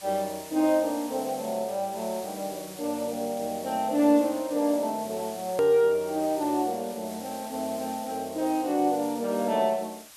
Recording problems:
hiss; SNR 16 dB
hard cut with a click; at 5.5 s

